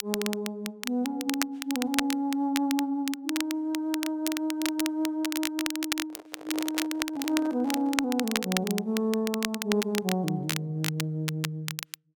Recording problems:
crackling; vinyl, SNR 4 dB
handling noise; from 6 to 8 s; peak -7 dB vs average level

